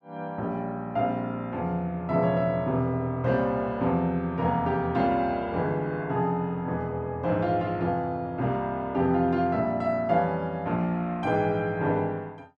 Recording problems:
none

